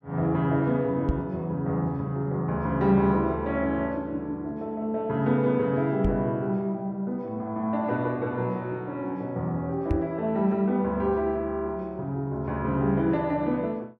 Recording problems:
knock on the microphone; at 1 s, at 6 s and at 10 s; peak +4 dB vs average level

